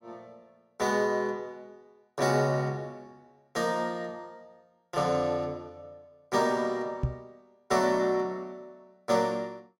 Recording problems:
microphone thump; at 7 s; peak +4 dB vs average level

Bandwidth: 16 kHz